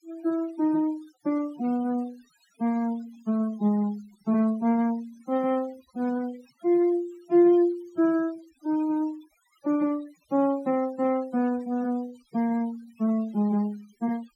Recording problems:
denoising artefacts; signal-to-artefact ratio 23 dB

